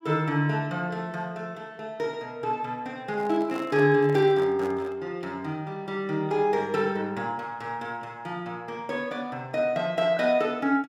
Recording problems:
microphone handling noise; from 3 to 5 s; peak -8 dB vs average level

